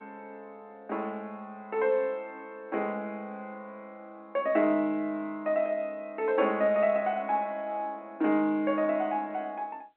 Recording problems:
telephone audio; 240 Hz to 3.2 kHz, G.711

